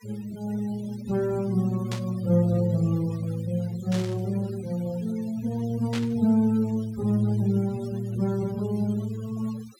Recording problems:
noise reduction artefacts; signal-to-artefact ratio 22 dB
static burst; at 2 s, at 4 s and at 6 s; peak -4 dB vs average level

